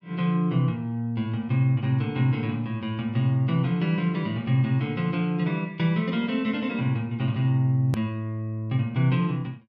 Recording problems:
hard cut with a click; at 8 s

